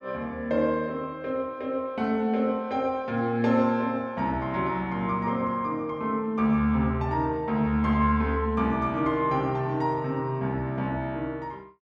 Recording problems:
none

